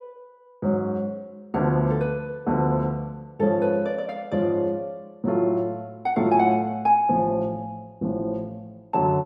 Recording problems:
none

